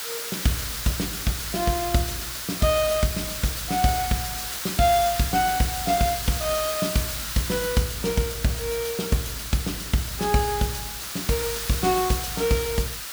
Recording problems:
hiss; SNR 4 dB

